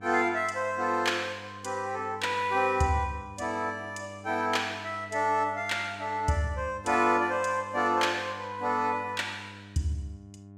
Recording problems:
hum; 50 Hz, harmonics up to 1 kHz, SNR 19 dB

